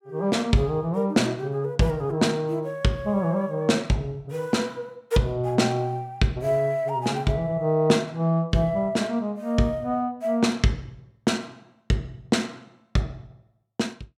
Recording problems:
none

